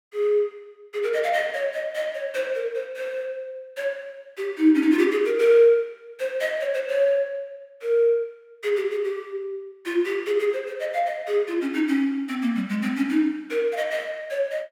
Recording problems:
none

